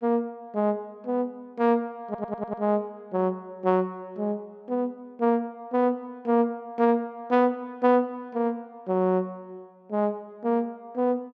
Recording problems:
stutter; at 2 s

